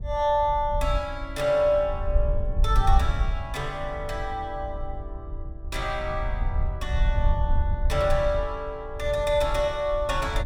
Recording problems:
wind noise; below 64 Hz, SNR 3 dB

